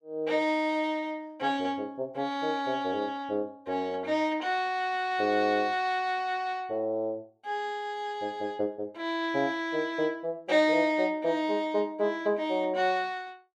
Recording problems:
none

